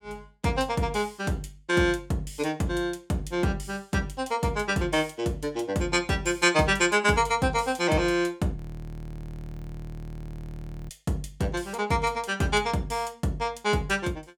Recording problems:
frozen audio; at 8.5 s for 2.5 s

